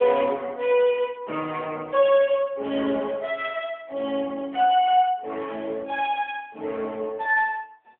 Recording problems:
phone line; 240 Hz to 3.4 kHz, AMR-NB

